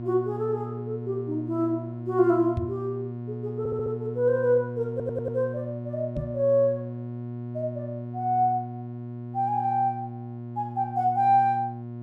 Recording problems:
hum; 60 Hz, harmonics up to 720 Hz, SNR 9 dB
knock on the microphone; at 2.5 s and at 6 s; peak 0 dB vs average level
audio stuttering; at 3.5 s and at 5 s

